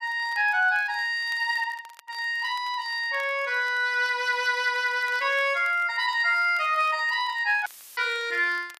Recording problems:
crackling; vinyl, SNR 28 dB
audio cutting out; at 7.5 s; filled with static

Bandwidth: 14.5 kHz